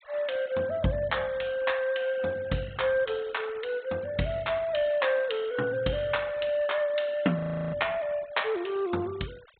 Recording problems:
treble cut off; nothing above 4 kHz
denoising artefacts; signal-to-artefact ratio 22 dB
audio freezing; at 7.5 s

